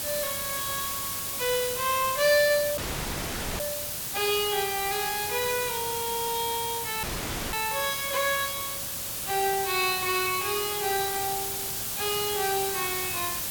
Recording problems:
background hiss; slope 0 dB per octave, SNR 2 dB
audio cutting out; at 3 s for 1 s and at 7 s for 0.5 s

